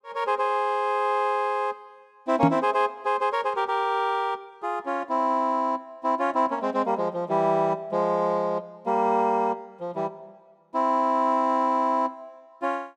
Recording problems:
microphone bump; at 2.5 s; peak +8 dB vs average level

